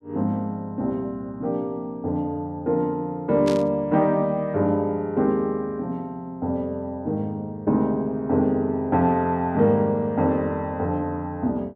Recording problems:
static burst; at 3.5 s; peak -5 dB vs average level

